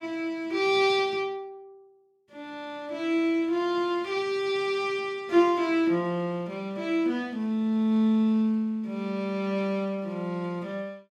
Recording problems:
none

